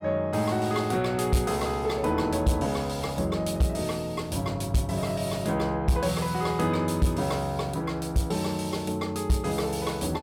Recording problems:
distortion; soft clipping, signal-to-distortion ratio 12 dB

